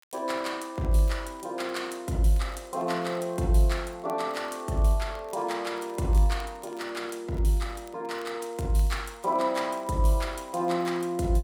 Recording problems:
crackle; vinyl, SNR 29 dB

